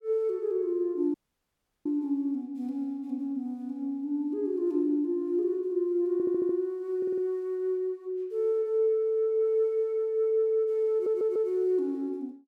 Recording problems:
dropout; at 1 s for 0.5 s
audio stuttering; at 6 s, at 7 s and at 11 s

